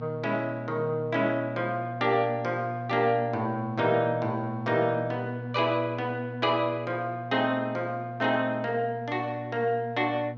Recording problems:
electrical hum; 60 Hz, harmonics up to 840 Hz, SNR 10 dB

